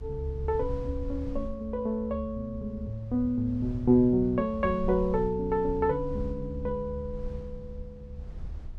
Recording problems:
low-frequency rumble; below 76 Hz, SNR 12 dB

